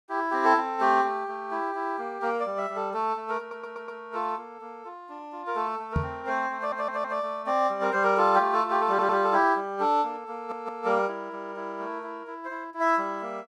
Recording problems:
stutter; 4 times, first at 3.5 s
microphone bump; at 6 s; peak +4 dB vs average level

